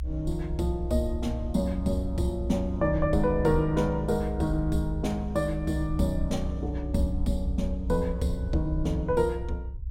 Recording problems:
rumble; below 64 Hz, strongest tone 62 Hz, SNR 6 dB

